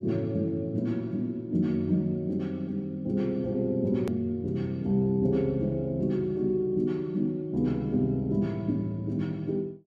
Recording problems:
edit click; at 4 s

